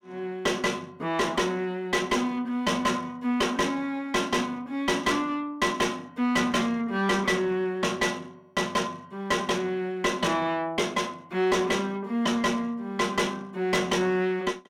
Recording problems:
distortion; soft clipping, signal-to-distortion ratio 7 dB

